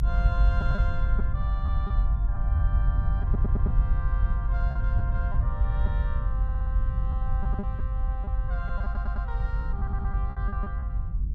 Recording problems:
rumble; below 72 Hz, SNR -12 dB
lost packets; 6% of the sound replaced, filled with repeated pitch periods
audio stuttering; 4 times, first at 3.5 s

